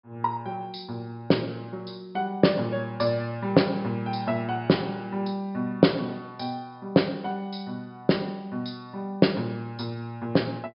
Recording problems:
treble missing; nothing above 5.5 kHz

